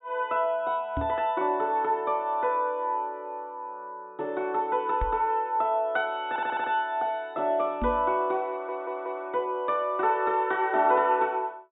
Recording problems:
treble missing; nothing above 4 kHz
microphone thump; at 1 s, at 5 s and at 8 s; peak -1 dB vs average level
stutter; at 6.5 s and at 8.5 s

